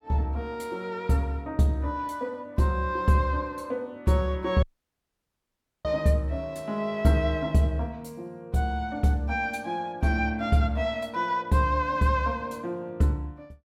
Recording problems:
dropout; at 4.5 s for 1 s

